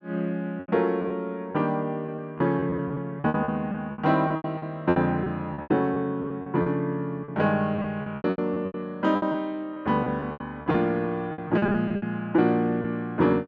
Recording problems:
packet loss; 14% of the sound replaced, filled with repeated pitch periods

